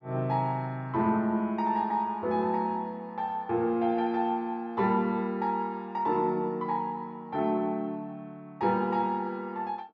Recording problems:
low-pass filter; nothing above 8 kHz

